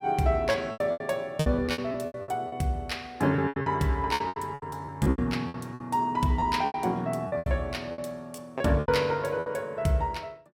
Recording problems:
packet loss; 16% of the sound replaced, filled with repeated pitch periods

